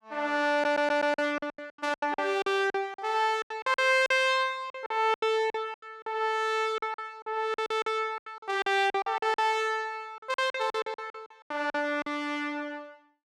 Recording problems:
lost packets; 16% of the sound replaced, filled with silence
audio stuttering; at 0.5 s

